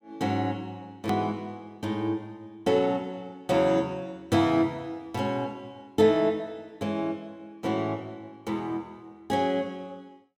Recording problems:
edit click; at 1 s

